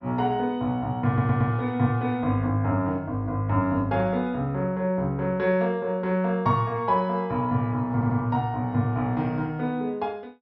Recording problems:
low-pass filter; nothing above 5.8 kHz
stutter; at 1 s and at 8 s

